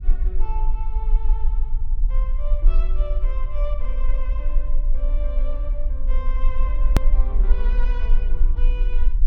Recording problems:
rumble; below 38 Hz, strongest tone 18 Hz, SNR -14 dB
edit click; at 7 s

